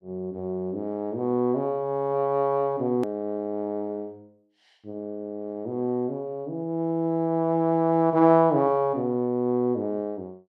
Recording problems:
click at an edit; at 3 s

